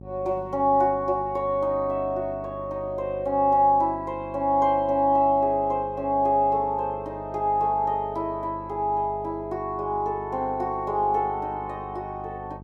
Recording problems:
hum; 50 Hz, harmonics up to 850 Hz, SNR 18 dB

